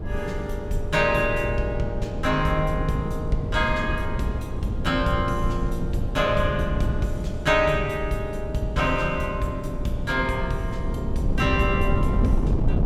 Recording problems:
wind noise; below 160 Hz, SNR 4 dB

